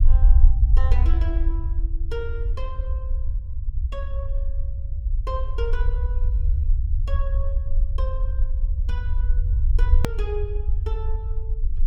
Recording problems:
rumble; below 60 Hz, SNR -13 dB
hard cut with a click; at 10 s

